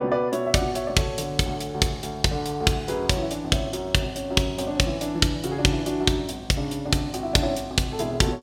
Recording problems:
none

